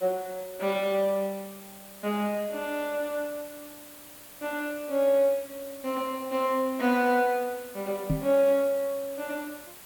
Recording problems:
background hiss; slope -2 dB per octave, SNR 17 dB
microphone thump; at 8 s; peak +4 dB vs average level

